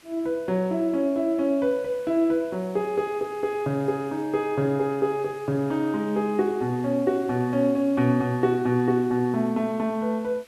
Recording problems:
background hiss; SNR 27 dB

